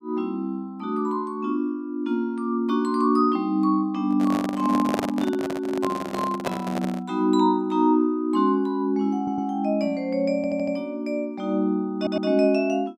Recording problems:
handling noise; from 4 to 7 s; peak +1 dB vs average level
audio stuttering; at 9 s, at 10 s and at 12 s

